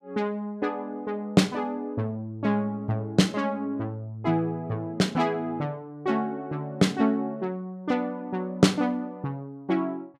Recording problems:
none

